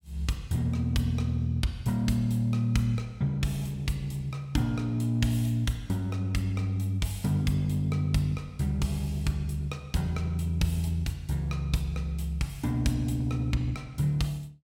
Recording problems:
none

